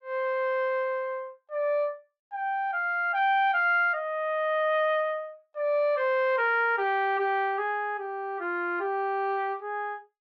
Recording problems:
none

